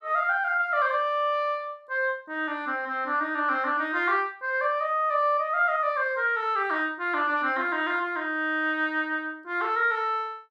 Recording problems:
none

